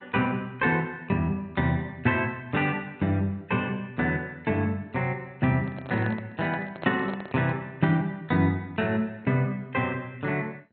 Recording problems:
lossy codec; MP2, log-spectral distance 2 dB, nothing above 3.6 kHz
microphone handling noise; from 5.5 to 7.5 s; peak -5 dB vs average level

